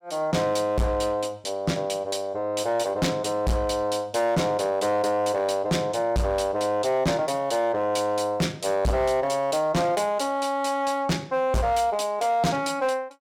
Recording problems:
distortion; hard clipping, signal-to-distortion ratio 7 dB

